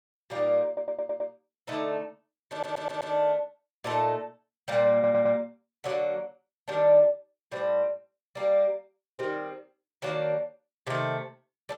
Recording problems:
stutter; at 0.5 s, at 2.5 s and at 5 s

